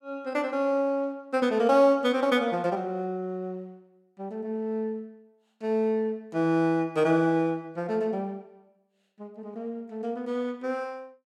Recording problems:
none

